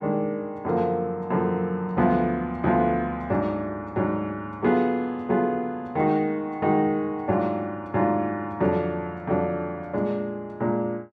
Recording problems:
none

